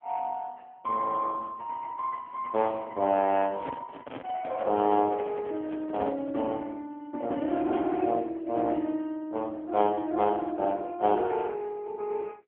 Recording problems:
telephone audio; 130 Hz to 3.3 kHz, AMR-NB
handling noise; from 3.5 to 6.5 s; peak -3 dB vs average level

